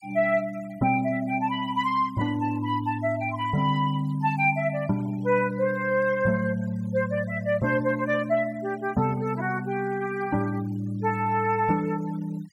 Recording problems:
denoising artefacts; signal-to-artefact ratio 24 dB

